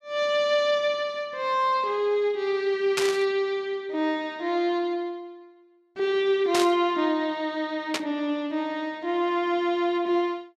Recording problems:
burst of static; at 3 s, at 6.5 s and at 8 s; peak +3 dB vs average level

